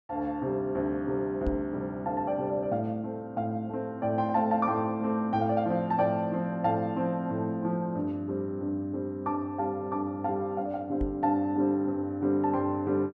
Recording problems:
knock on the microphone; at 1.5 s and at 11 s; peak -1 dB vs average level

